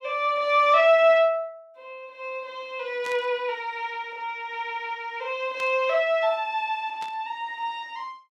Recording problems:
static burst; at 3 s, at 5.5 s and at 7 s; peak -12 dB vs average level

